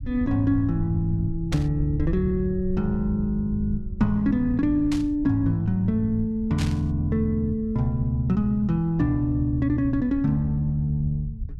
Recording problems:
low-frequency rumble; below 92 Hz, SNR 12 dB
static burst; at 1.5 s, at 5 s and at 6.5 s; peak -5 dB vs average level

